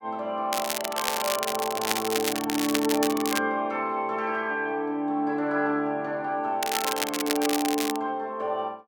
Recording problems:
crackling; from 0.5 to 3.5 s and from 6.5 to 8 s; loose cable, SNR 2 dB

